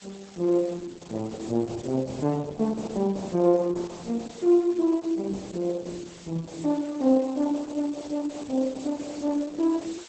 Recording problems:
lossy compression; Opus, then Opus, log-spectral distance 9 dB
hiss; slope +2 dB per octave, SNR 20 dB

